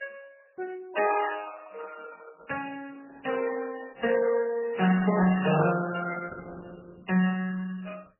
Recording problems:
lossy compression; Opus, then MP3, log-spectral distance 6 dB, nothing above 2.8 kHz

